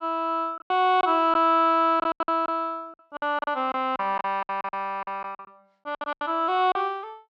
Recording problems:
lost packets; 14% of the sound replaced, filled with silence

